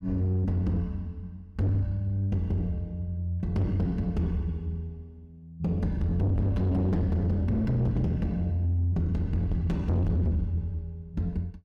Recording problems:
distortion; soft clipping, signal-to-distortion ratio 7 dB

